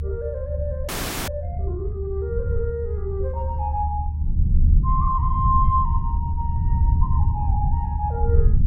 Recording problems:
rumble; below 84 Hz, SNR -4 dB
frozen audio; at 1 s

